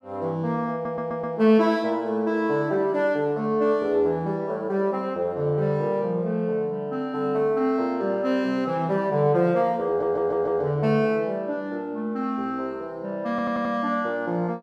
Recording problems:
stutter; at 0.5 s, at 10 s and at 13 s

